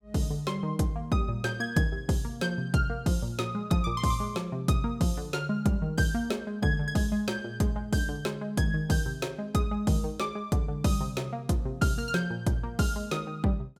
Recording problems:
none

